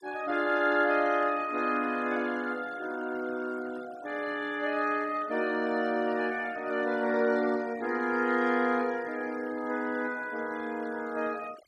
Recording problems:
denoising artefacts; signal-to-artefact ratio 20 dB

